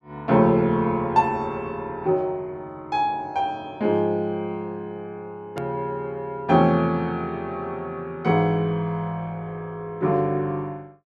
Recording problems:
hard cut with a click; at 5.5 s

